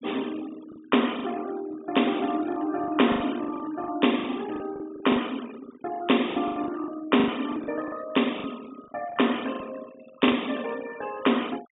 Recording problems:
treble missing; nothing above 3.7 kHz
denoising artefacts; signal-to-artefact ratio 18 dB
lost packets; 11% of the sound replaced, filled with the last packet

